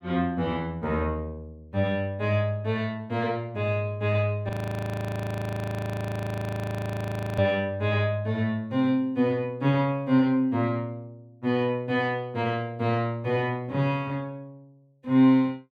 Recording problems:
audio freezing; at 4.5 s for 3 s

